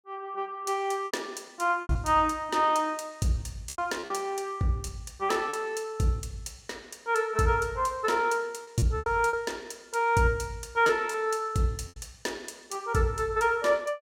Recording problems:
lost packets; 6% of the sound replaced, filled with repeated pitch periods

